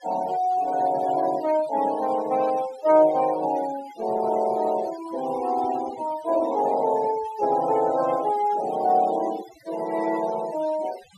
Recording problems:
denoising artefacts; signal-to-artefact ratio 17 dB

